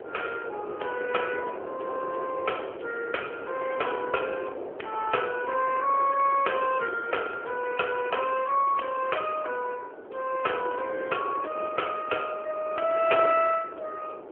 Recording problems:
phone line; 340 Hz to 3.2 kHz, AMR-NB
wind on the microphone; below 630 Hz, SNR 10 dB

